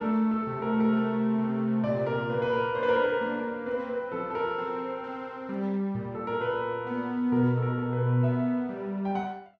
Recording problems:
none

